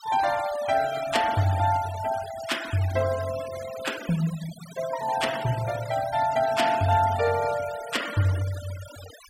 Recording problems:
noise reduction artefacts; signal-to-artefact ratio 14 dB

